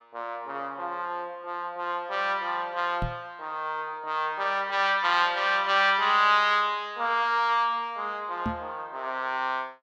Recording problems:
knock on the microphone; at 3 s and at 8.5 s; peak -1 dB vs average level

